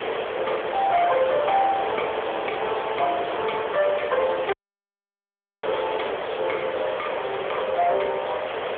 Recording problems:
phone line; 340 Hz to 3.4 kHz, AMR-NB
distorted audio; soft clipping, signal-to-distortion ratio 12 dB
hiss; SNR 4 dB
dropout; at 4.5 s for 1 s

